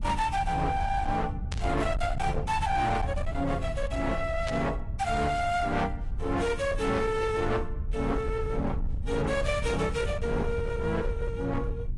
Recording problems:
lossy codec; AAC, log-spectral distance 2 dB, nothing above 10.7 kHz
distortion; hard clipping, signal-to-distortion ratio 11 dB
rumble; below 98 Hz, SNR 6 dB
static burst; at 1.5 s and at 4.5 s; peak -4 dB vs average level

